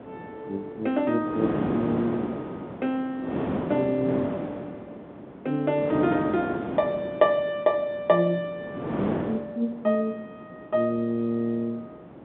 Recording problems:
phone line; 190 Hz to 3.9 kHz, G.711
wind on the microphone; below 580 Hz, SNR 6 dB

